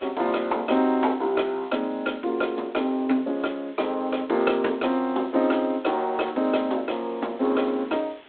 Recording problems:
telephone audio; 220 Hz to 3.9 kHz, G.726
hiss; SNR 26 dB

